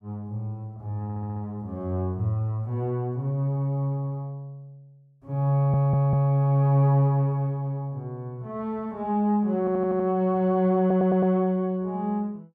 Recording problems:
stutter; 4 times, first at 1 s

